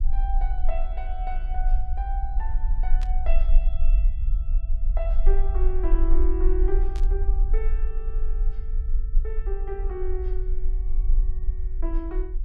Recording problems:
rumble; below 40 Hz, strongest tone 22 Hz, SNR -9 dB
static burst; at 3 s and at 7 s; peak -4 dB vs average level

